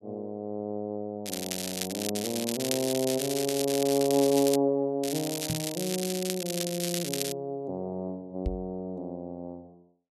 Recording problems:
crackling; from 1.5 to 4.5 s and from 5 to 7.5 s; loose cable, SNR 3 dB
knock on the microphone; at 5.5 s and at 8.5 s; peak +2 dB vs average level

